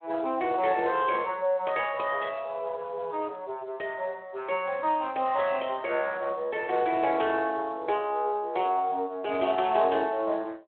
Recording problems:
phone line; 340 Hz to 3.3 kHz, Speex

